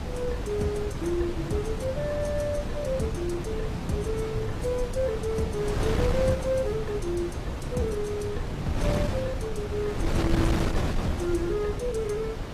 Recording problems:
lossy codec; AAC, log-spectral distance 2 dB
wind on the microphone; below 350 Hz, SNR 1 dB

